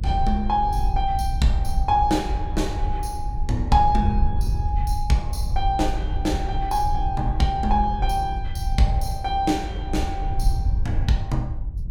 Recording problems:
rumble; below 70 Hz, SNR 3 dB

